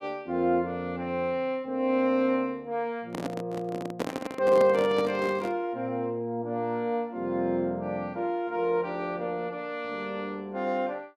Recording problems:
handling noise; from 3 to 5.5 s; peak +2 dB vs average level

